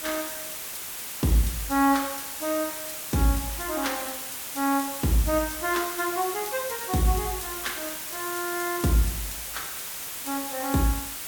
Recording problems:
hiss; slope 0 dB per octave, SNR 5 dB

